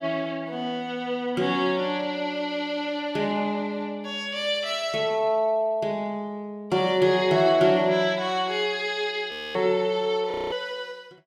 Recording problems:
frozen audio; at 9.5 s and at 10 s

